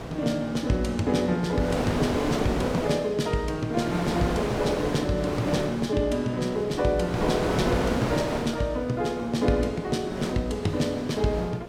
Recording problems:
electrical hum; 60 Hz, harmonics up to 1.3 kHz, SNR 17 dB
wind noise; below 1 kHz, SNR 5 dB

